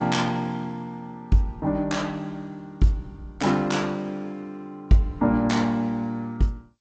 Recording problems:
lossy codec; AAC, then G.722, log-spectral distance 2 dB, nothing above 7.6 kHz

